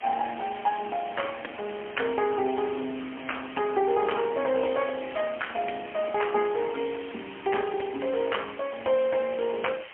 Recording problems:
phone line; 220 Hz to 3.2 kHz, AMR-NB, then MP3
background hiss; SNR 15 dB

